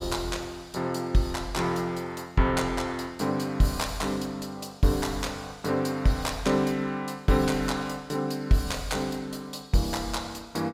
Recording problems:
none

